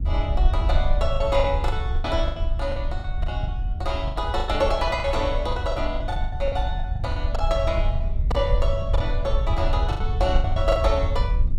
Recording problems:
rumble; below 72 Hz, SNR 0 dB
lost packets; 13% of the sound replaced, filled with the last packet

